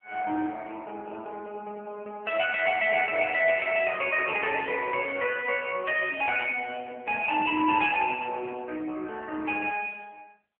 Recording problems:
telephone audio; 260 Hz to 3.3 kHz, AMR-NB

